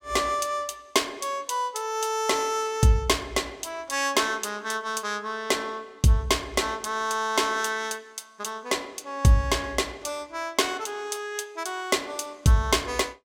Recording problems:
none

